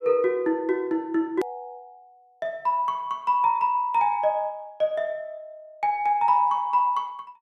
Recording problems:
click at an edit; at 1.5 s

